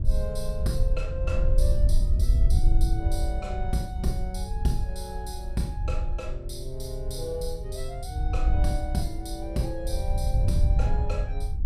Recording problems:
wind noise; below 66 Hz, SNR -5 dB

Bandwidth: 14.5 kHz